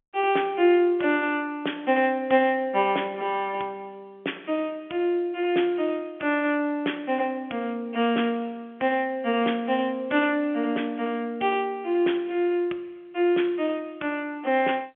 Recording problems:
telephone audio; 260 Hz to 3.4 kHz, G.711

